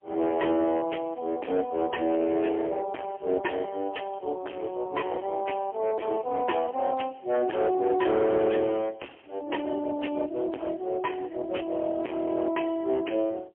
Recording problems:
telephone audio; 260 Hz to 3 kHz, AMR-NB, then MP3
distortion; hard clipping, uneven, signal-to-distortion ratio 5 dB

